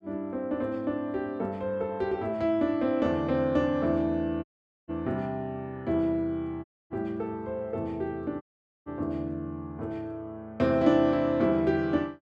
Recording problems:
dropout; at 4.5 s, at 6.5 s and at 8.5 s

